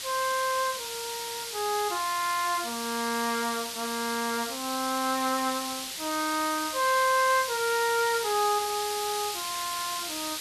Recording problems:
background hiss; slope +3 dB per octave, SNR 4 dB

